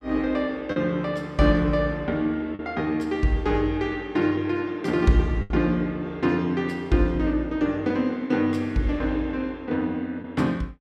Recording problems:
packet loss; 2% of the sound replaced, filled with the last packet

